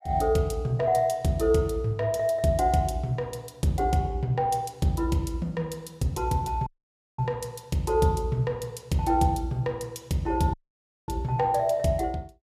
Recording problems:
audio cutting out; at 6.5 s for 0.5 s and at 11 s for 0.5 s

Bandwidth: 14.5 kHz